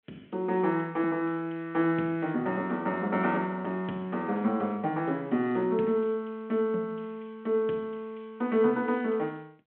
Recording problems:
telephone audio; 170 Hz to 3.3 kHz, G.726

